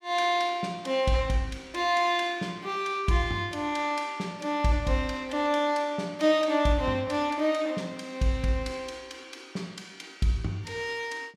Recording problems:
none

